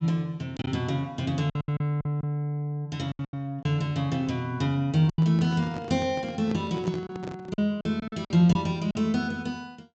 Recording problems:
treble missing; nothing above 8 kHz
lost packets; 8% of the sound replaced, filled with silence
handling noise; from 5 to 7.5 s; peak -5 dB vs average level

